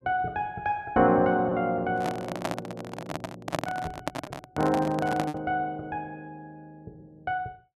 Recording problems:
packet loss; 1.4% of the sound replaced, filled with repeated pitch periods
microphone handling noise; from 2 to 5.5 s; peak +3 dB vs average level

